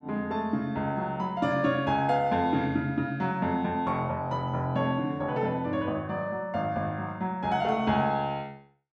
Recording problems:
none

